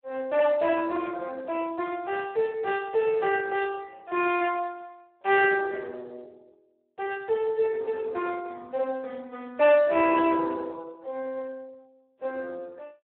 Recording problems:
telephone audio; 340 Hz to 3.5 kHz, Speex

